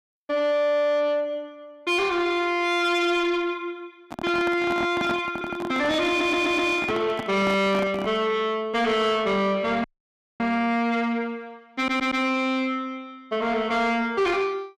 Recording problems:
distortion; soft clipping, signal-to-distortion ratio 10 dB
handling noise; from 4 to 8 s; peak 0 dB vs average level
audio stuttering; at 5.5 s, at 6 s and at 12 s
dropout; at 10 s for 0.5 s

